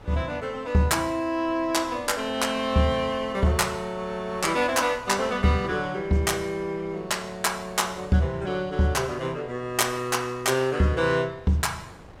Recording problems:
wind on the microphone; below 900 Hz, SNR 22 dB

